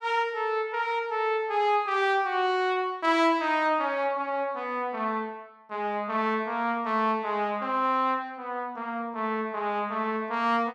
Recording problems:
none

